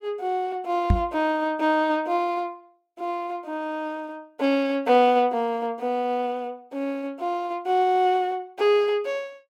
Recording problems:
knock on the microphone; at 1 s; peak +7 dB vs average level

